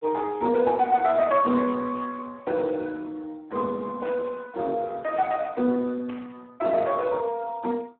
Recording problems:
phone line; 190 Hz to 2.2 kHz, Speex
burst of static; at 2 s, at 4 s and at 6 s; peak -14 dB vs average level

